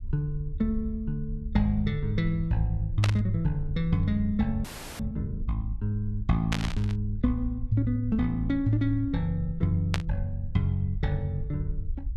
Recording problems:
low-frequency rumble; below 60 Hz, SNR 10 dB
static burst; at 3 s, at 6.5 s and at 10 s; peak +3 dB vs average level
frozen audio; at 4.5 s

